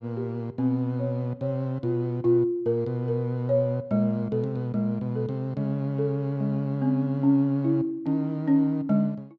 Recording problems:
none

